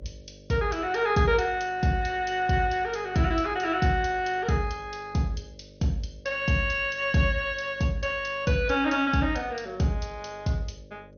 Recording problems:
lossy compression; MP2, log-spectral distance 5 dB, nothing above 6.3 kHz
mains hum; 50 Hz, harmonics up to 600 Hz, SNR 24 dB

